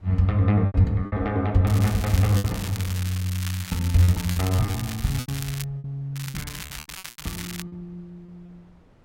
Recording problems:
wind noise; below 460 Hz, SNR 29 dB
lost packets; 9% of the sound replaced, filled with repeated pitch periods
crackle; from 1.5 to 5.5 s and from 6 to 7.5 s; loose cable, SNR 12 dB

